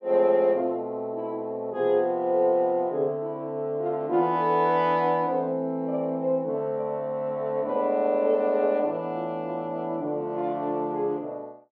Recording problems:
treble missing; nothing above 7.1 kHz

